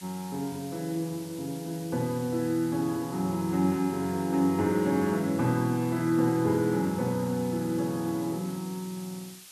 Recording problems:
hiss; slope +3 dB per octave, SNR 18 dB

